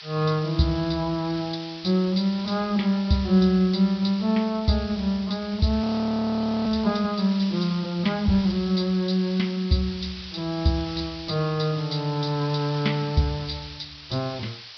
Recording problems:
low-pass filter; nothing above 5.5 kHz
hiss; SNR 14 dB
frozen audio; at 6 s for 1 s

